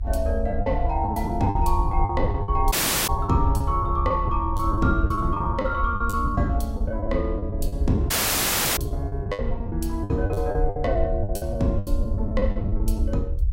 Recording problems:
low-frequency rumble; below 74 Hz, SNR 2 dB
lost packets; 14% of the sound replaced, filled with the last packet
dropout; at 2.5 s and at 8 s for 0.5 s

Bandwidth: 16 kHz